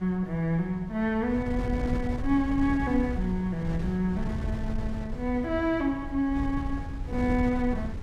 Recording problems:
wind noise; below 120 Hz, SNR 7 dB

